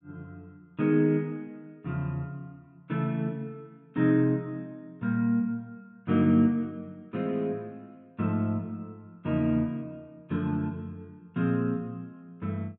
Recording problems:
low-pass filter; nothing above 4 kHz

